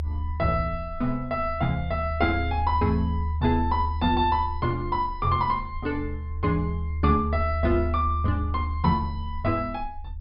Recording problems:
treble cut off; nothing above 5.5 kHz
rumble; below 78 Hz, strongest tone 78 Hz, SNR 5 dB

